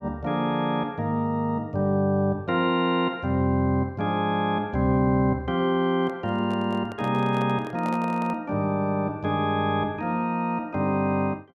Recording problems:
handling noise; from 6 to 8.5 s; peak -8 dB vs average level

